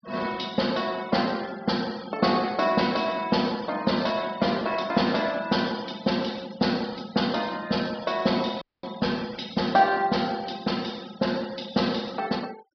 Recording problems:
treble cut off; nothing above 5.5 kHz
noise reduction artefacts; signal-to-artefact ratio 20 dB
dropout; at 8.5 s

